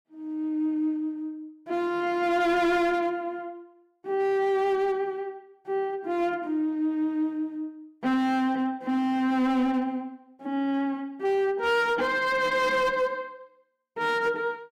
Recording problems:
distorted audio; hard clipping, signal-to-distortion ratio 10 dB

